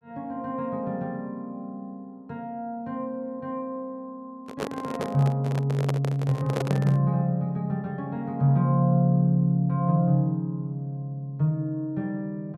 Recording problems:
microphone handling noise; from 4.5 to 7 s; peak 0 dB vs average level

